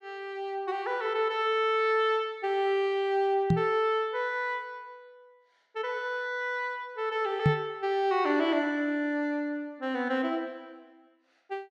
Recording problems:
microphone bump; at 3.5 s and at 7.5 s; peak +8 dB vs average level

